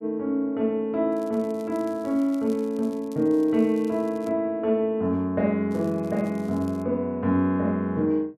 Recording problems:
crackling; from 1 to 4.5 s and from 5.5 to 7 s; loose cable, SNR 28 dB

